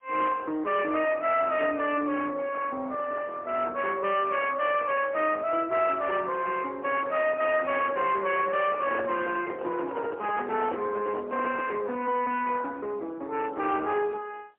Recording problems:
phone line; 260 Hz to 3.1 kHz, AMR-NB, then MP3
distortion; soft clipping, signal-to-distortion ratio 11 dB
microphone handling noise; from 8.5 to 12 s; peak -2 dB vs average level

